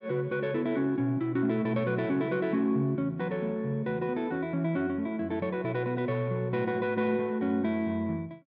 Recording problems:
none

